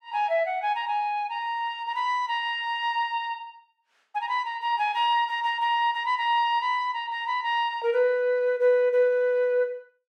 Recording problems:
none

